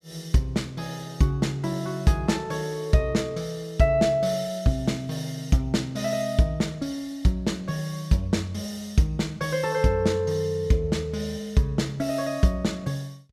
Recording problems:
none

